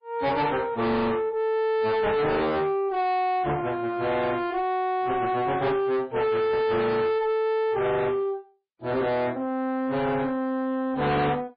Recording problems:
lossy compression; MP3, log-spectral distance 2 dB, nothing above 4.4 kHz
distortion; soft clipping, signal-to-distortion ratio 8 dB

